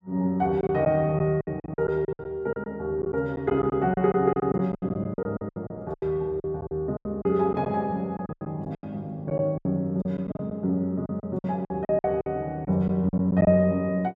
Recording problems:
lost packets; 15% of the sound replaced, filled with silence

